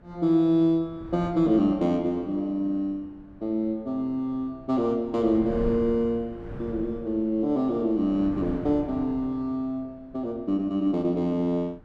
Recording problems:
wind on the microphone; below 260 Hz, SNR 17 dB

